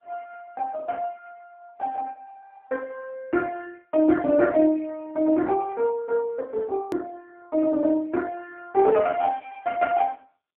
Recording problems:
telephone audio; 110 Hz to 3.2 kHz, AMR-NB
edit click; at 7 s

